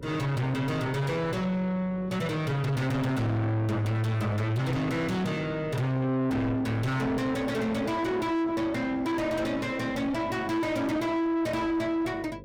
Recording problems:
distortion; soft clipping, signal-to-distortion ratio 5 dB
hum; 50 Hz, harmonics up to 700 Hz, SNR 20 dB

